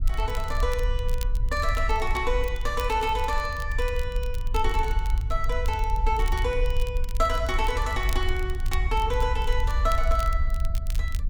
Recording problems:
low-frequency rumble; below 56 Hz, SNR 1 dB
crackling; vinyl, SNR 17 dB

